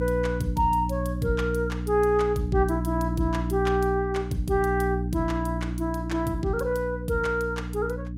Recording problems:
electrical hum; 60 Hz, harmonics up to 300 Hz, SNR 4 dB

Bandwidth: 16 kHz